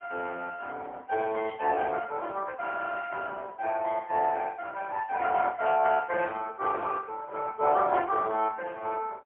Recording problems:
phone line; 340 Hz to 3.1 kHz, AMR-NB, then MP3

